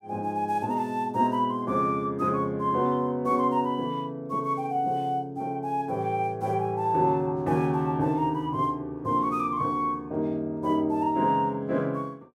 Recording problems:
none

